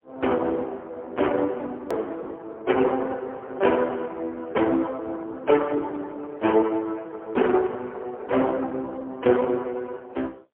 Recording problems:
phone line; 220 Hz to 3.3 kHz, AMR-NB, then MP3
hard cut with a click; at 2 s

